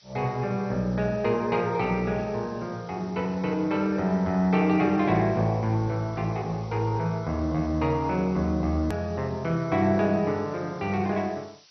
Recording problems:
lossy compression; MP2, log-spectral distance 10 dB, nothing above 13.1 kHz
background hiss; slope +4 dB per octave, SNR 27 dB
hard cut with a click; at 9 s

